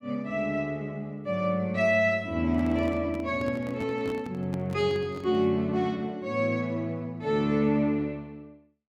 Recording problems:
handling noise; from 2.5 to 5.5 s; peak -7 dB vs average level

